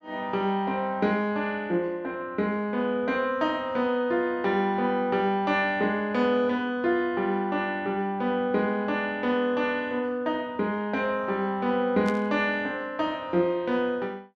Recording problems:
burst of static; at 12 s; peak -10 dB vs average level

